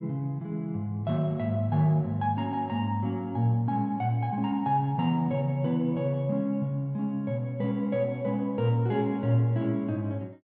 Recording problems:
none

